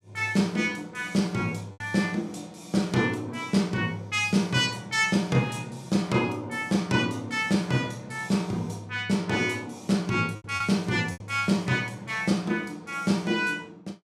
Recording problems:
lost packets; 2% of the sound replaced, filled with repeated pitch periods

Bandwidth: 15 kHz